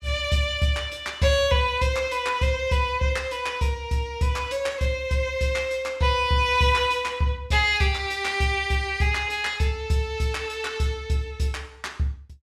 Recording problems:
none

